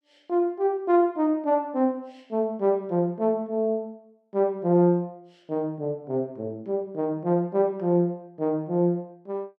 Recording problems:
none

